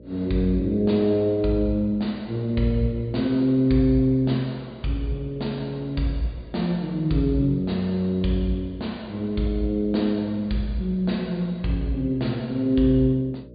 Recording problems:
treble missing; nothing above 4.8 kHz
hum; 60 Hz, harmonics up to 600 Hz, SNR 21 dB

